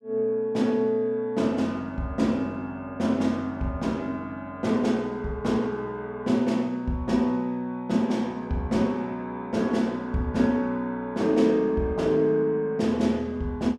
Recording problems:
none

